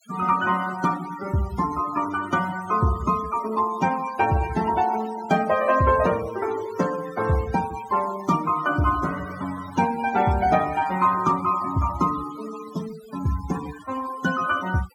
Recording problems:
noise reduction artefacts; signal-to-artefact ratio 13 dB

